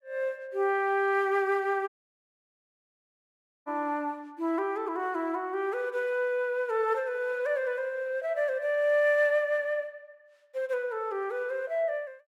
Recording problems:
dropout; at 2 s for 2 s

